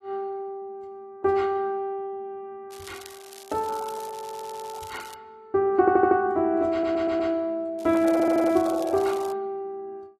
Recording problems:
lossy compression; AAC, log-spectral distance 3 dB
crackle; from 2.5 to 5 s and from 8 to 9.5 s; loose cable, SNR 21 dB
audio stuttering; 4 times, first at 4 s

